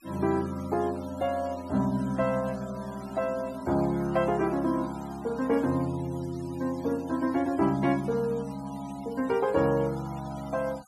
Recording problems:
denoising artefacts; signal-to-artefact ratio 21 dB

